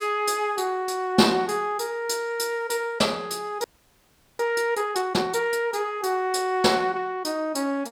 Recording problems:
frozen audio; at 3.5 s for 0.5 s

